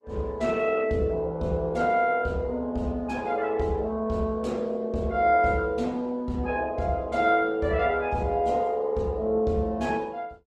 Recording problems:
codec artefacts; Opus, log-spectral distance 2 dB

